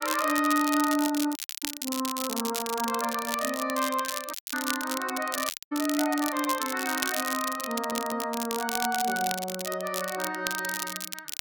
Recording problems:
crackling; vinyl, SNR 5 dB
audio cutting out; at 1.5 s, at 4.5 s and at 5.5 s
audio stuttering; at 7.5 s

